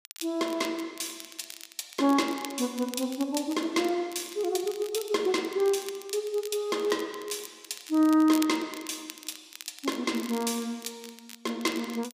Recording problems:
crackling; vinyl, SNR 16 dB

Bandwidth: 15 kHz